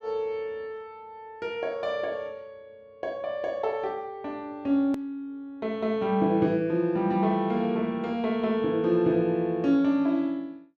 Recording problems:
click at an edit; at 5 s

